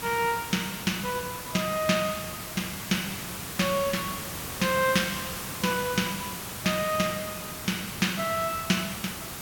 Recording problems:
hiss; slope -2 dB per octave, SNR 6 dB

